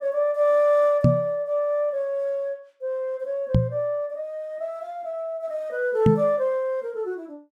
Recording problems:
knock on the microphone; at 1 s, at 3.5 s and at 6 s; peak +9 dB vs average level

